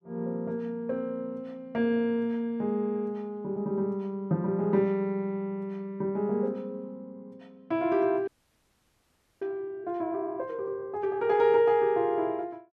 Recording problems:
audio freezing; at 8.5 s for 1 s

